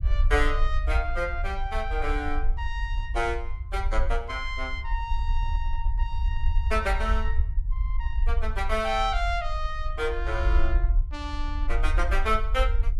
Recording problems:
low-frequency rumble; below 54 Hz, SNR -1 dB

